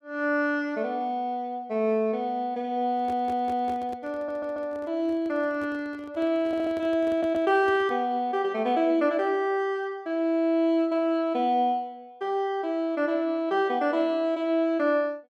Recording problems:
microphone handling noise; from 3 to 8 s; peak -12 dB vs average level
audio stuttering; 4 times, first at 3 s

